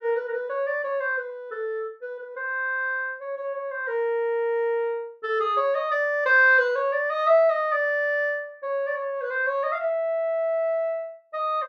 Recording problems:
none

